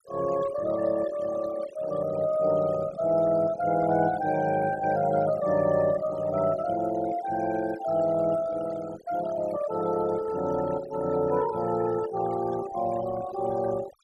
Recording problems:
denoising artefacts; signal-to-artefact ratio 16 dB

